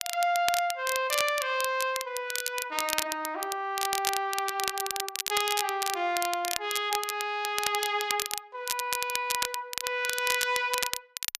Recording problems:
crackle; vinyl, SNR 3 dB

